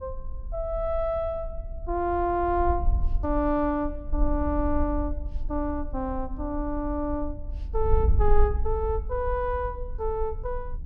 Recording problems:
wind noise; below 58 Hz, SNR 4 dB

